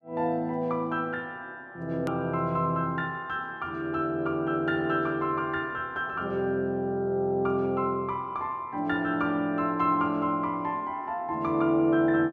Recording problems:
click at an edit; at 2 s

